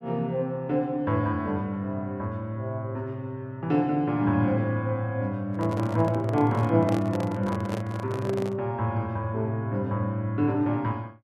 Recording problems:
microphone handling noise; from 5.5 to 8.5 s; peak -3 dB vs average level

